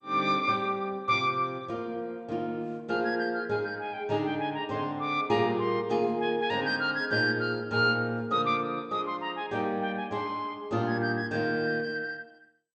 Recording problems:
lossy codec; MP2, log-spectral distance 2 dB

